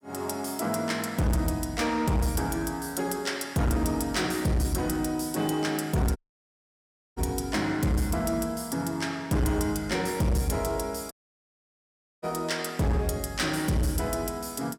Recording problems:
distorted audio; hard clipping, signal-to-distortion ratio 7 dB
audio cutting out; at 6 s for 1 s and at 11 s for 1 s

